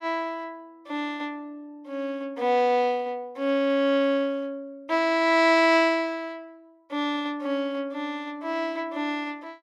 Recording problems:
none

